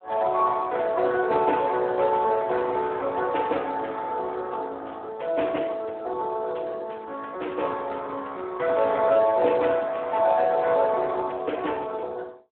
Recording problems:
telephone audio; 320 Hz to 3.3 kHz, Speex

